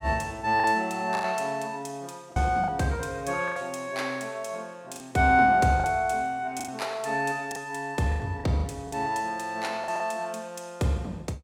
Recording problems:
packet loss; 7% of the sound replaced, filled with the last packet

